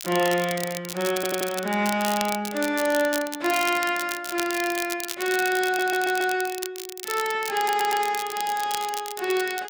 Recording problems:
crackle; vinyl, SNR 9 dB
audio stuttering; at 1 s, at 5.5 s and at 7.5 s

